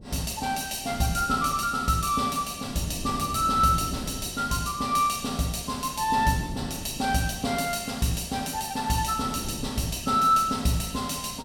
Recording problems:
wind noise; below 270 Hz, SNR 15 dB

